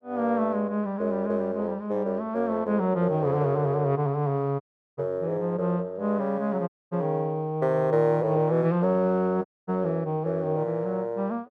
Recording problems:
dropout; at 4.5 s, at 6.5 s and at 9.5 s

